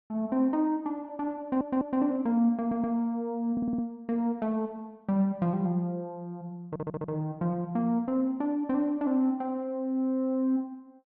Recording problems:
stutter; 4 times, first at 1.5 s

